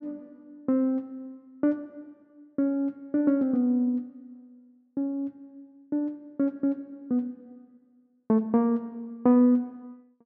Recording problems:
none

